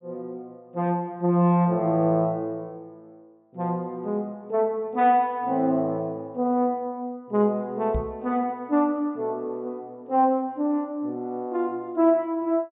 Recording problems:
low-pass filter; nothing above 4 kHz
knock on the microphone; at 8 s; peak 0 dB vs average level

